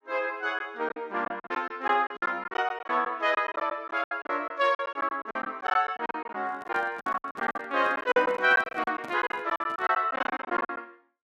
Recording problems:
packet loss; 17% of the sound replaced, filled with silence
microphone handling noise; from 6.5 to 10 s; peak -9 dB vs average level

